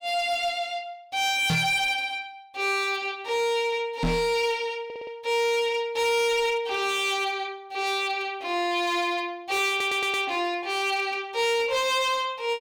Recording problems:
distortion; hard clipping, signal-to-distortion ratio 11 dB
microphone bump; at 1.5 s and at 4 s; peak +3 dB vs average level
audio stuttering; at 5 s and at 9.5 s

